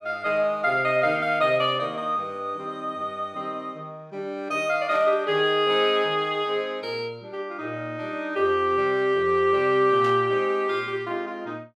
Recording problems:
burst of static; at 5 s and at 10 s; peak -12 dB vs average level

